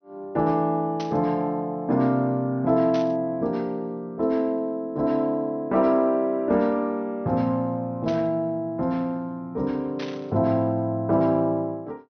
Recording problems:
low-pass filter; nothing above 6.2 kHz
static burst; 4 times, first at 1 s; peak -9 dB vs average level

